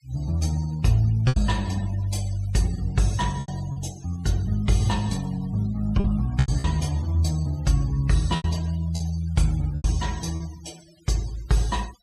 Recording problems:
denoising artefacts; signal-to-artefact ratio 20 dB
lost packets; 5% of the sound replaced, filled with repeated pitch periods

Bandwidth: 14.5 kHz